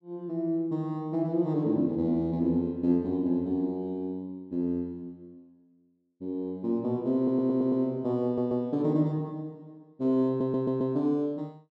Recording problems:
audio stuttering; at 7 s, at 8 s and at 10 s

